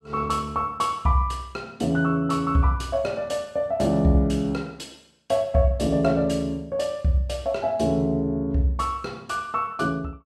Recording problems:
none

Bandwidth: 14.5 kHz